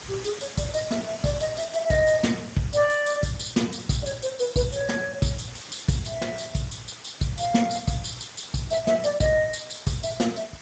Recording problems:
codec artefacts; Speex, log-spectral distance 12 dB, nothing above 7.3 kHz
hiss; slope -1 dB per octave, SNR 16 dB

